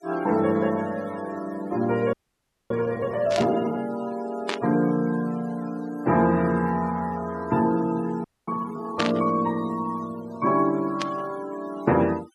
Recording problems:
noise reduction artefacts; signal-to-artefact ratio 19 dB
frozen audio; at 2 s for 0.5 s and at 8 s
burst of static; 4 times, first at 3.5 s; peak +3 dB vs average level

